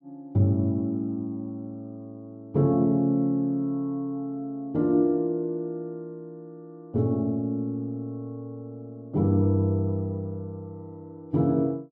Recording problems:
none

